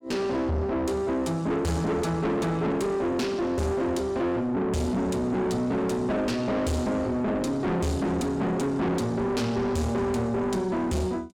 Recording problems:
distorted audio; soft clipping, signal-to-distortion ratio 5 dB

